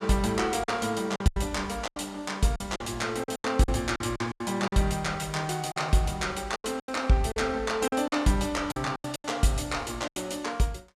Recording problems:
packet loss; 12% of the sound replaced, filled with silence

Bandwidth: 14.5 kHz